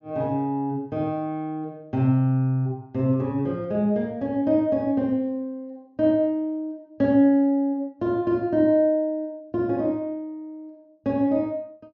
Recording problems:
treble missing; nothing above 6.7 kHz

